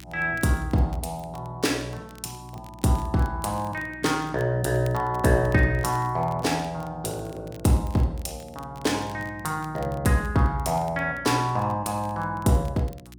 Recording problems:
hum; 60 Hz, harmonics up to 360 Hz, SNR 21 dB
crackle; vinyl, SNR 27 dB

